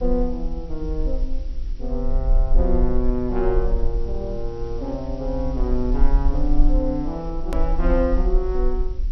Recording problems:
treble cut off; nothing above 5.8 kHz
hum; 50 Hz, harmonics up to 400 Hz, SNR 20 dB
hiss; slope 0 dB per octave, SNR 27 dB
low-frequency rumble; below 42 Hz, strongest tone 20 Hz, SNR 0 dB
hard cut with a click; at 7.5 s

